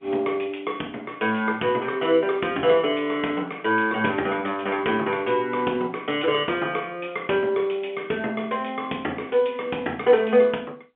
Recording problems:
phone line; 220 Hz to 3.4 kHz, G.711

